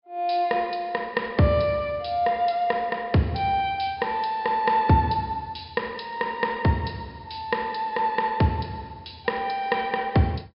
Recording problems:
treble missing; nothing above 5.5 kHz

